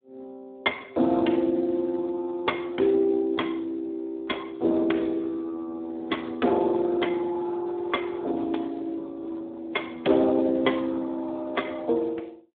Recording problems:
telephone audio; 220 Hz to 3.4 kHz, Speex

